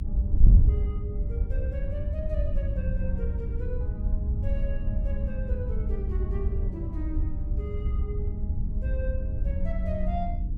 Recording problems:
electrical hum; 60 Hz, harmonics up to 300 Hz, SNR 3 dB
wind on the microphone; below 76 Hz, SNR -10 dB

